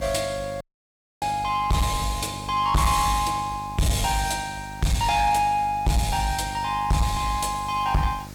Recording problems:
distorted audio; soft clipping, signal-to-distortion ratio 7 dB
hum; 50 Hz, harmonics up to 950 Hz, SNR 15 dB
background hiss; slope -1 dB per octave, SNR 24 dB
audio cutting out; at 0.5 s for 0.5 s

